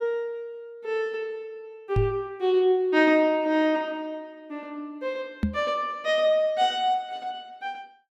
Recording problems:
microphone thump; at 2 s and at 5.5 s; peak +4 dB vs average level

